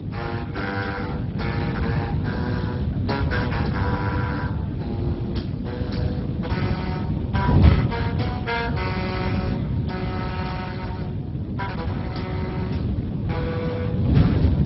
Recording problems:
lossy codec; Speex, then MP2, log-spectral distance 3 dB, nothing above 5.5 kHz
electrical hum; 50 Hz, harmonics up to 350 Hz, SNR 5 dB
wind noise; below 220 Hz, SNR -5 dB

